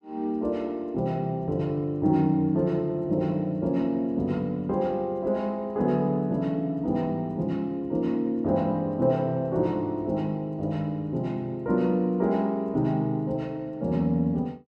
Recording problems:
none

